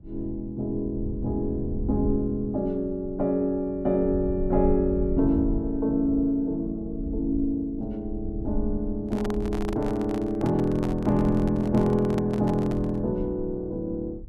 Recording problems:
rumble; below 72 Hz, SNR 11 dB
handling noise; from 9 to 13 s; peak -5 dB vs average level

